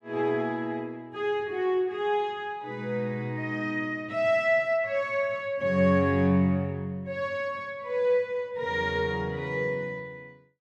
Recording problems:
none

